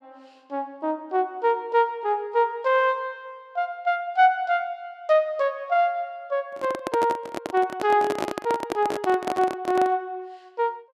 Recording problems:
handling noise; from 6.5 to 10 s; peak +1 dB vs average level

